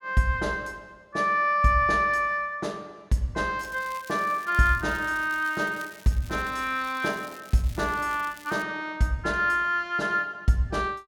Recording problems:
crackle; from 3.5 to 8.5 s; loose cable, SNR 22 dB

